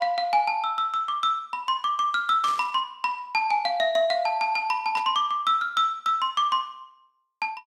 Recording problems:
burst of static; at 2.5 s and at 5 s; peak -10 dB vs average level

